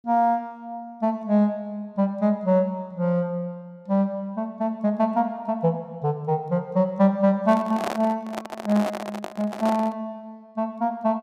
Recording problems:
handling noise; from 7.5 to 10 s; peak 0 dB vs average level

